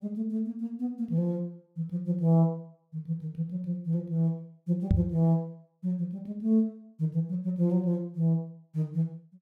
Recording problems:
knock on the microphone; at 5 s; peak +8 dB vs average level

